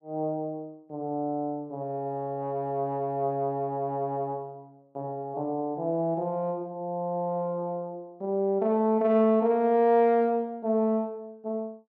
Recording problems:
none

